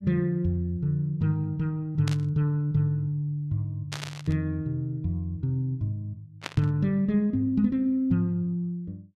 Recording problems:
static burst; at 2 s, at 4 s and at 6.5 s; peak -2 dB vs average level

